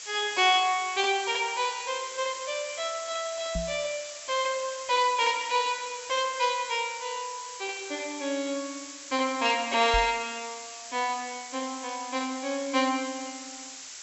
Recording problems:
low-pass filter; nothing above 7.7 kHz
background hiss; slope +3 dB per octave, SNR 11 dB
microphone bump; at 3.5 s and at 10 s; peak -2 dB vs average level

